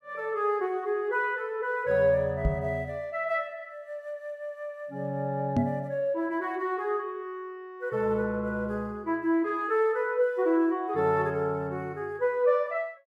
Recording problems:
microphone bump; at 2.5 s and at 5.5 s; peak +6 dB vs average level

